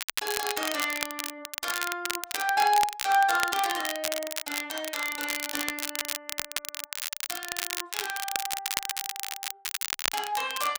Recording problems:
crackling; vinyl, SNR 3 dB

